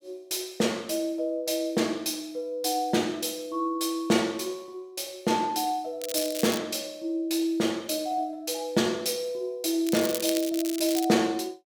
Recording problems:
crackle; at 6 s and from 10 to 11 s; loose cable, SNR 7 dB

